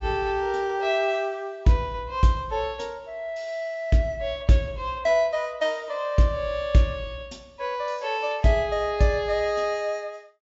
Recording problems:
low-pass filter; nothing above 8 kHz

